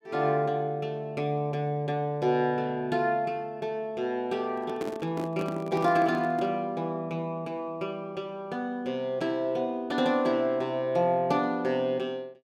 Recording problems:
microphone handling noise; from 4.5 to 6.5 s; peak -2 dB vs average level

